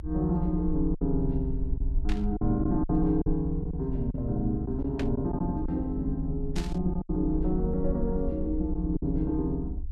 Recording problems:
low-frequency rumble; below 60 Hz, SNR 6 dB
lost packets; 5% of the sound replaced, filled with silence
static burst; at 2 s, at 5 s and at 6.5 s; peak -5 dB vs average level

